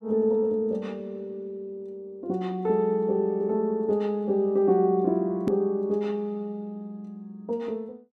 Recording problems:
hard cut with a click; at 5.5 s

